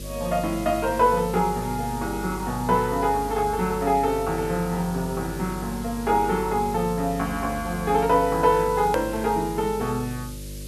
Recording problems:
electrical hum; 50 Hz, harmonics up to 600 Hz, SNR 13 dB
background hiss; slope +4 dB per octave, SNR 17 dB
edit click; at 9 s

